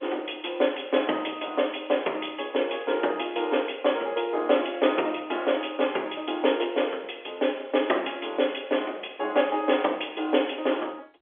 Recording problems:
telephone audio; 280 Hz to 3.4 kHz, G.711

